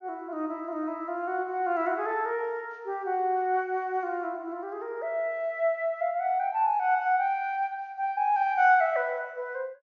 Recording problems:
low-pass filter; nothing above 6.8 kHz

